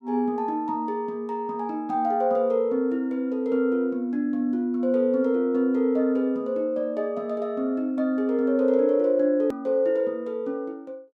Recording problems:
click at an edit; at 9.5 s

